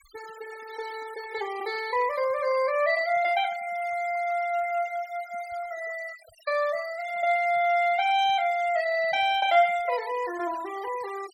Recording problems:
noise reduction artefacts; signal-to-artefact ratio 20 dB

